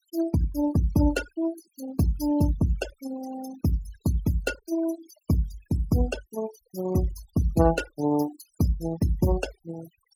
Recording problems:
denoising artefacts; signal-to-artefact ratio 14 dB

